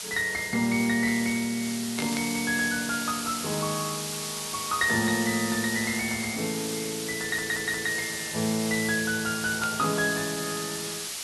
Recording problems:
hiss; slope +3 dB per octave, SNR 4 dB
static burst; at 2 s and at 9.5 s; peak -3 dB vs average level
audio stuttering; at 7 s

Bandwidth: 12 kHz